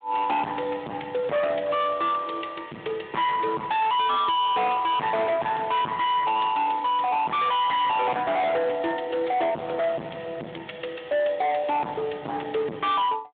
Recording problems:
phone line; 990 Hz to 3.6 kHz, Speex
distortion; hard clipping, signal-to-distortion ratio 5 dB

